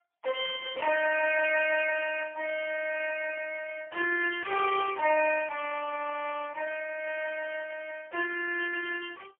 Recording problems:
phone line; 320 Hz to 2.9 kHz, AMR-NB, then MP3

